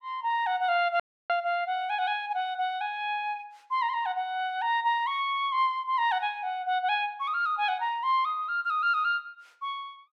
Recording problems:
audio cutting out; at 1 s

